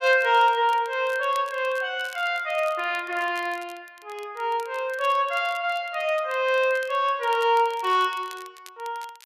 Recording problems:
crackle; vinyl, SNR 24 dB

